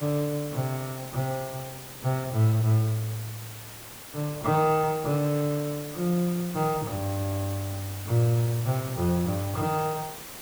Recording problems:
background hiss; slope -2 dB per octave, SNR 12 dB

